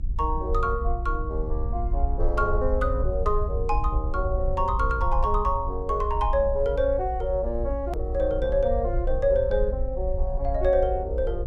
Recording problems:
low-frequency rumble; below 58 Hz, SNR 4 dB
click at an edit; at 8 s

